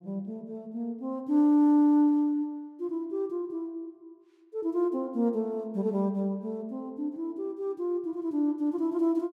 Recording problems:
none

